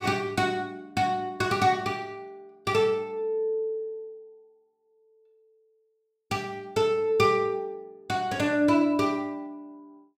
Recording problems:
none

